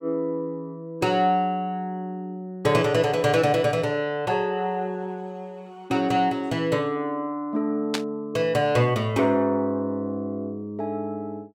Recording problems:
burst of static; at 8 s; peak +2 dB vs average level

